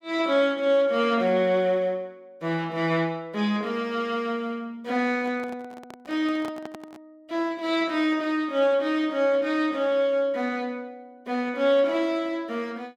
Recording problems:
microphone handling noise; from 5 to 7 s; peak -10 dB vs average level

